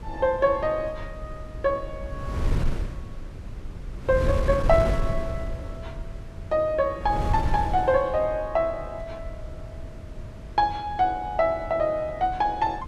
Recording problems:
wind on the microphone; below 120 Hz, SNR 9 dB

